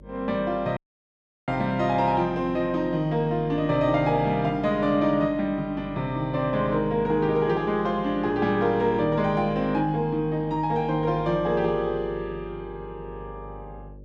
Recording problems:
hum; 50 Hz, harmonics up to 600 Hz, SNR 20 dB
audio cutting out; at 1 s for 0.5 s

